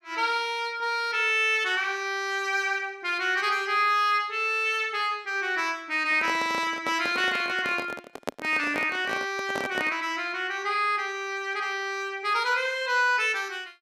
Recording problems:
handling noise; from 6 to 10 s; peak 0 dB vs average level

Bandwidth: 14.5 kHz